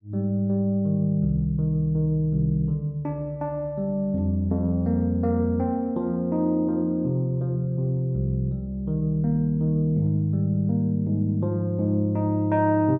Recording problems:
none

